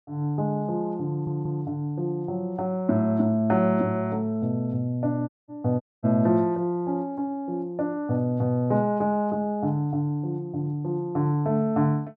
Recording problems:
audio stuttering; at 1 s
dropout; at 5.5 s and at 6 s

